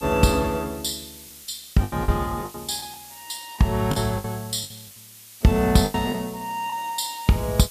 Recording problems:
hiss; SNR 17 dB
lost packets; 9% of the sound replaced, filled with the last packet

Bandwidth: 14.5 kHz